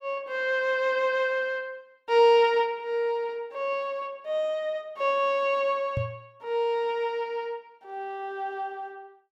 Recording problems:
microphone bump; at 6 s; peak 0 dB vs average level

